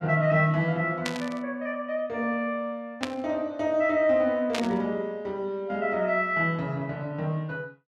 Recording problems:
static burst; at 1 s, at 3 s and at 4.5 s; peak +1 dB vs average level

